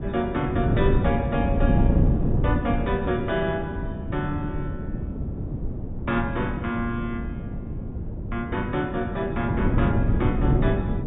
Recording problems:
low-pass filter; nothing above 4 kHz
wind on the microphone; below 210 Hz, SNR -1 dB

